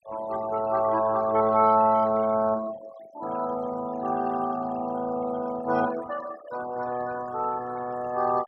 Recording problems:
noise reduction artefacts; signal-to-artefact ratio 17 dB

